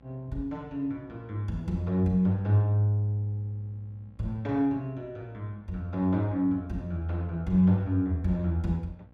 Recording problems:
electrical hum; 60 Hz, harmonics up to 1.3 kHz, SNR 27 dB

